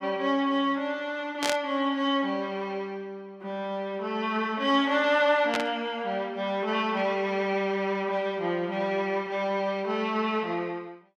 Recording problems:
static burst; at 1.5 s and at 5.5 s; peak +3 dB vs average level

